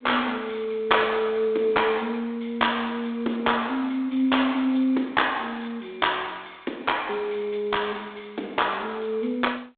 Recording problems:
telephone audio; 240 Hz to 3.6 kHz, G.726

